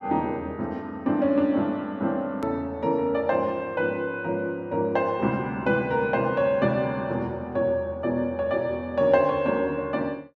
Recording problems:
click at an edit; at 2.5 s

